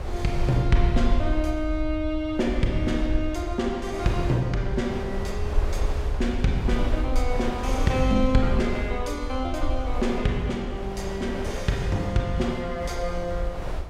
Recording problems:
low-frequency rumble; below 60 Hz, SNR 5 dB
wind on the microphone; below 820 Hz, SNR 12 dB

